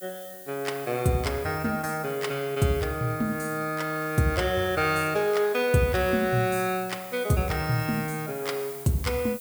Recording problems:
background hiss; slope +6 dB per octave, SNR 15 dB

